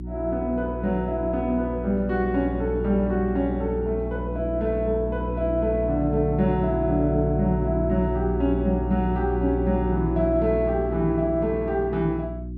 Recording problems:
hum; 60 Hz, harmonics up to 360 Hz, SNR 5 dB

